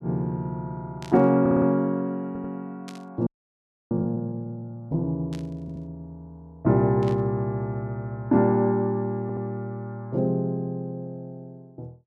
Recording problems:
static burst; 4 times, first at 1 s; peak -13 dB vs average level
audio stuttering; 4 times, first at 1.5 s
frozen audio; at 3.5 s for 0.5 s

